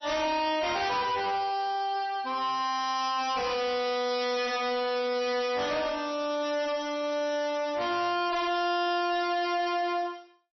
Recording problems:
codec artefacts; MP3, then MP3, log-spectral distance 6 dB, nothing above 5.8 kHz
distortion; hard clipping, signal-to-distortion ratio 6 dB

